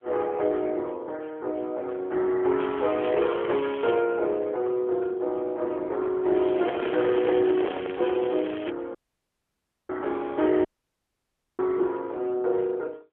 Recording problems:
phone line; 280 Hz to 3.4 kHz, AMR-NB
crackling; from 2.5 to 4 s and from 6.5 to 8.5 s; loose cable, SNR 16 dB
microphone handling noise; from 6.5 to 8 s; peak +2 dB vs average level
dropout; at 9 s for 1 s and at 11 s for 1 s

